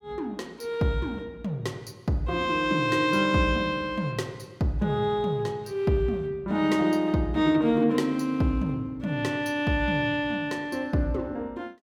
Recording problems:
none

